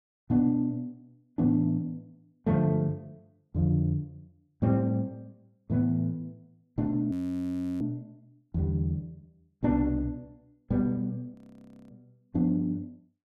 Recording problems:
audio freezing; at 7 s for 0.5 s and at 11 s for 0.5 s

